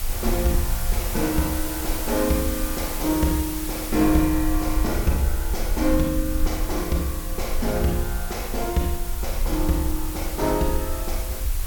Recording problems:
background hiss; slope -1 dB per octave, SNR 6 dB
rumble; below 58 Hz, SNR 5 dB

